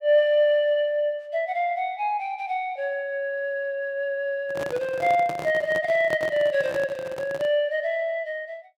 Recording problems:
handling noise; from 4.5 to 7.5 s; peak -5 dB vs average level

